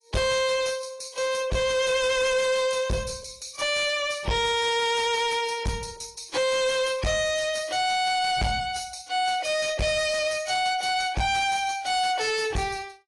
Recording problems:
codec artefacts; AAC, log-spectral distance 4 dB, nothing above 10.7 kHz
distortion; soft clipping, signal-to-distortion ratio 7 dB

